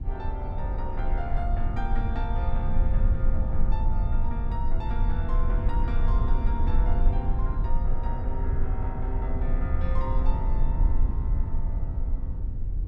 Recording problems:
low-frequency rumble; below 56 Hz, strongest tone 20 Hz, SNR -8 dB

